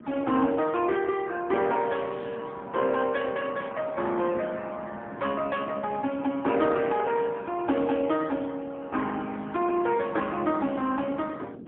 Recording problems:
phone line; 220 Hz to 3.4 kHz, AMR-NB, then MP3
wind noise; below 340 Hz, SNR 17 dB

